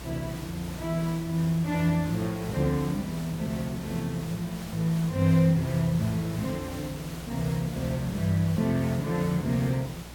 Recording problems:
electrical hum; 60 Hz, harmonics up to 540 Hz, SNR 19 dB
hiss; slope -3 dB per octave, SNR 14 dB

